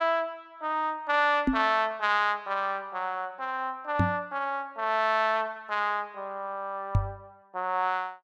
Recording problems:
microphone bump; at 1.5 s, at 4 s and at 7 s; peak +7 dB vs average level

